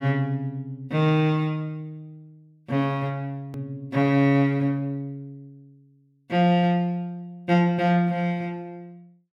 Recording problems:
hard cut with a click; at 3.5 s

